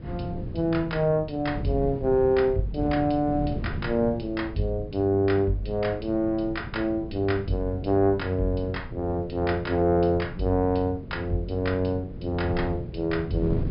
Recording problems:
treble missing; nothing above 5.1 kHz
wind noise; below 190 Hz, SNR 11 dB

